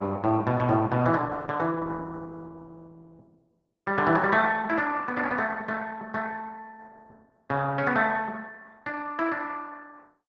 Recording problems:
lossy codec; Opus, log-spectral distance 3 dB

